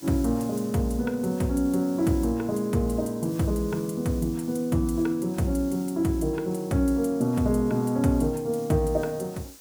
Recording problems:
background hiss; SNR 21 dB

